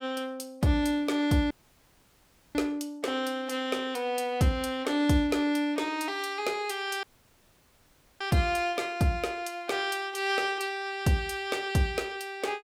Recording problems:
dropout; at 1.5 s for 1 s and at 7 s for 1 s

